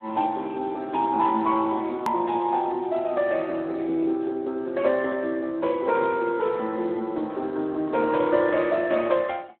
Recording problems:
phone line; 190 Hz to 2.8 kHz, Speex
edit click; at 2 s

